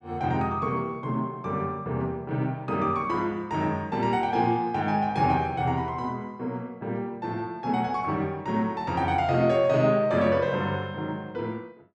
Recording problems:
none

